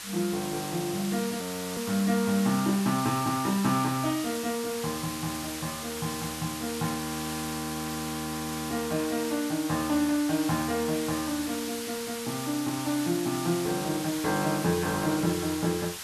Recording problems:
hiss; slope +2 dB per octave, SNR 7 dB
frozen audio; at 1.5 s and at 7 s for 1.5 s

